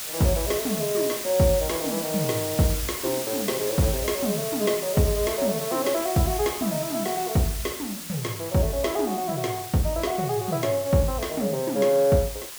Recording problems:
background hiss; slope +1 dB per octave, SNR 7 dB

